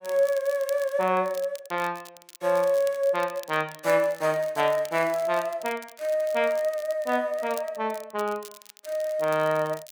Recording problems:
crackle; vinyl, SNR 20 dB

